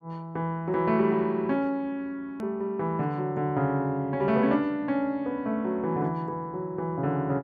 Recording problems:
edit click; at 2.5 s

